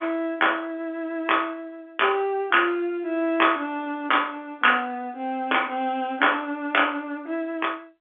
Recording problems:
telephone audio; 220 Hz to 3.4 kHz, G.711

